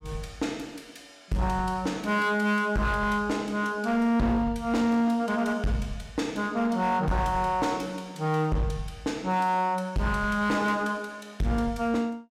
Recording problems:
distorted audio; hard clipping, signal-to-distortion ratio 10 dB

